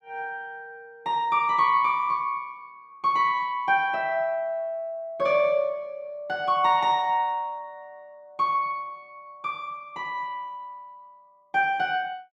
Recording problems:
none

